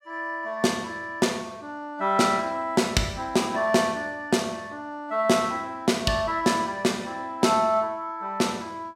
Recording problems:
none

